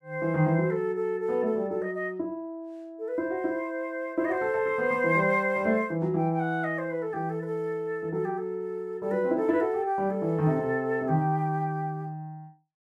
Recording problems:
none

